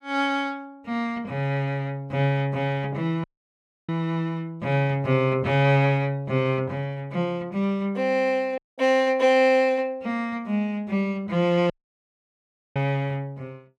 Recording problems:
audio cutting out; at 3 s for 0.5 s, at 8.5 s and at 12 s for 1 s

